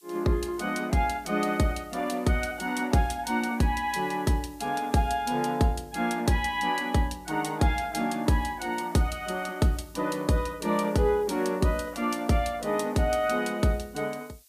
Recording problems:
background hiss; SNR 27 dB

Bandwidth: 15 kHz